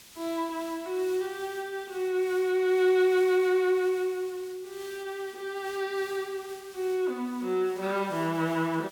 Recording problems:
background hiss; slope +1 dB per octave, SNR 20 dB

